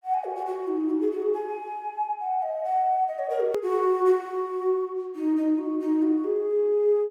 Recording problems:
hard cut with a click; at 3.5 s

